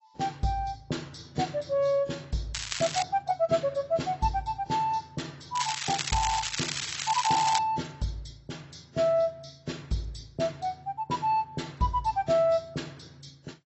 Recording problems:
lossy codec; AAC, log-spectral distance 7 dB, nothing above 7.8 kHz
crackling; at 2.5 s and from 5.5 to 7.5 s; loose cable, SNR 3 dB

